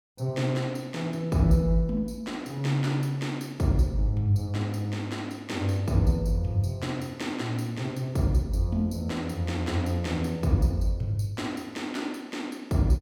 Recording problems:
none

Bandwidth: 17.5 kHz